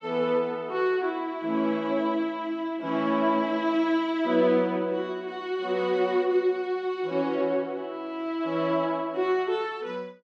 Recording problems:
none

